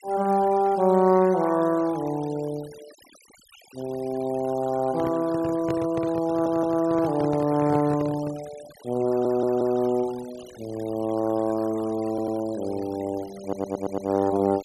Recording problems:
noise reduction artefacts; signal-to-artefact ratio 21 dB
handling noise; from 5 to 8.5 s; peak -4 dB vs average level
audio stuttering; 4 times, first at 6.5 s

